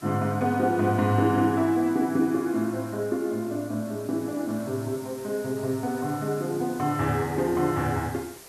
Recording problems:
background hiss; SNR 20 dB

